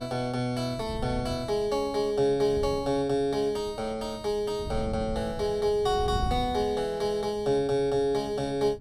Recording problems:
wind on the microphone; below 150 Hz, SNR 13 dB

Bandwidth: 16.5 kHz